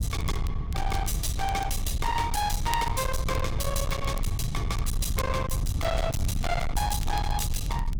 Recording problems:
distortion; hard clipping, uneven, signal-to-distortion ratio 7 dB
rumble; below 120 Hz, SNR 1 dB
crackle; vinyl, SNR 17 dB

